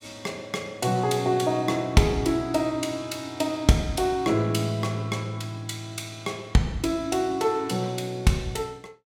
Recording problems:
none

